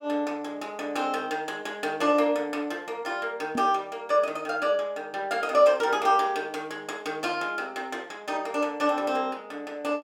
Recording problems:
microphone thump; at 3.5 s; peak -1 dB vs average level

